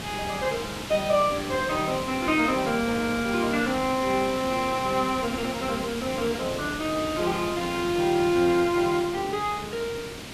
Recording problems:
background hiss; slope -2 dB per octave, SNR 9 dB

